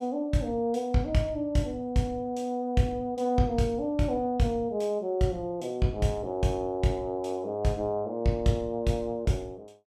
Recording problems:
none

